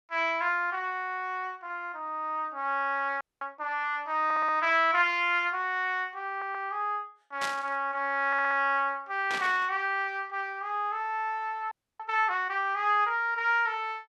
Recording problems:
frozen audio; at 3 s and at 12 s
stutter; at 4.5 s, at 6.5 s and at 8.5 s
burst of static; at 7.5 s and at 9.5 s; peak -2 dB vs average level

